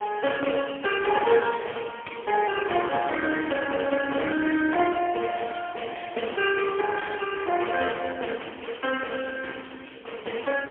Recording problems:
telephone audio; 260 Hz to 3.3 kHz, AMR-NB, then MP3

